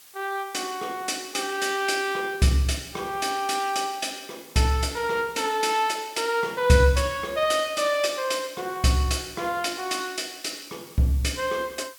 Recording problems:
background hiss; slope +2 dB per octave, SNR 21 dB

